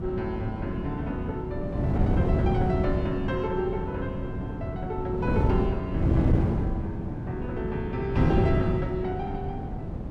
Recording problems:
wind noise; below 250 Hz, SNR -3 dB

